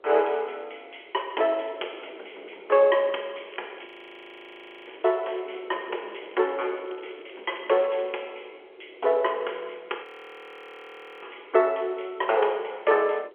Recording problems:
phone line; 320 Hz to 3.3 kHz, G.711
wind noise; below 560 Hz, SNR 21 dB
crackle; from 3.5 to 5.5 s and from 5.5 to 8 s; loose cable, SNR 26 dB
frozen audio; at 4 s for 1 s and at 10 s for 1 s

